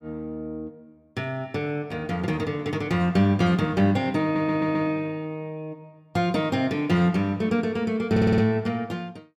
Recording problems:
stutter; at 4 s and at 8 s

